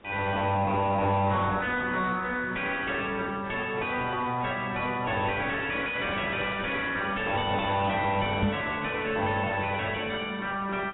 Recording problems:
lossy compression; AAC, log-spectral distance 5 dB
distorted audio; soft clipping, signal-to-distortion ratio 5 dB
hiss; SNR 26 dB
knock on the microphone; at 8.5 s; peak +7 dB vs average level

